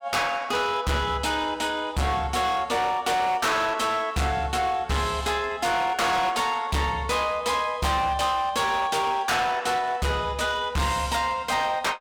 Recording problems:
distortion; hard clipping, signal-to-distortion ratio 7 dB

